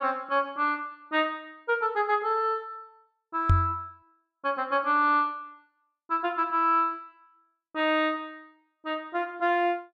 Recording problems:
microphone thump; at 3.5 s; peak +8 dB vs average level

